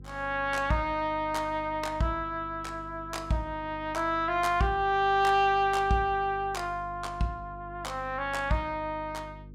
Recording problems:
electrical hum; 50 Hz, harmonics up to 500 Hz, SNR 18 dB

